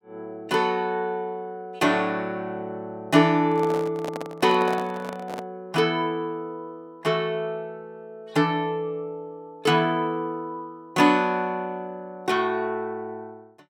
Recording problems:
microphone handling noise; from 3.5 to 5.5 s; peak -4 dB vs average level

